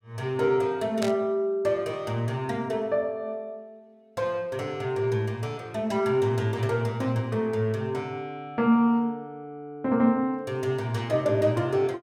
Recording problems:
burst of static; at 1 s; peak -3 dB vs average level

